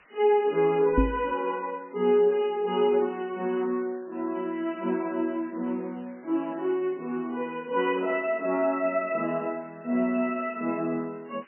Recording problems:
lossy compression; MP3, log-spectral distance 4 dB, nothing above 2.4 kHz
hiss; SNR 28 dB
microphone thump; at 1 s; peak +8 dB vs average level

